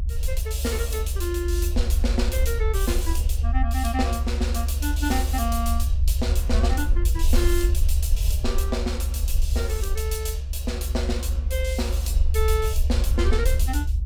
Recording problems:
electrical hum; 50 Hz, harmonics up to 500 Hz, SNR 16 dB
rumble; below 70 Hz, SNR -4 dB

